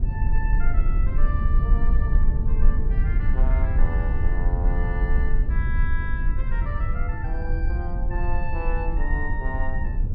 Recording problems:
treble cut off; nothing above 5.5 kHz
rumble; below 54 Hz, SNR -10 dB
wind noise; below 100 Hz, SNR 9 dB

